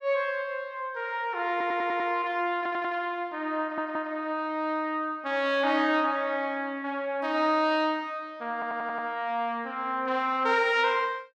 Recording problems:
stutter; 4 times, first at 1.5 s

